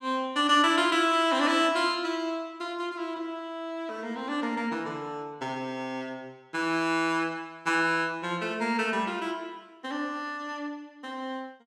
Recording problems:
none

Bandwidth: 15.5 kHz